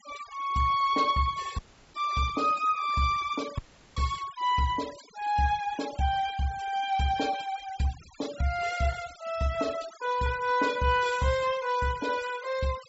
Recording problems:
low-pass filter; nothing above 8 kHz
noise reduction artefacts; signal-to-artefact ratio 17 dB
audio cutting out; at 1.5 s and at 3.5 s

